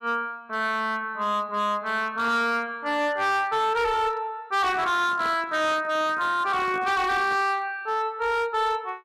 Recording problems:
distortion; hard clipping, signal-to-distortion ratio 11 dB
microphone handling noise; from 4.5 to 7.5 s; peak -11 dB vs average level

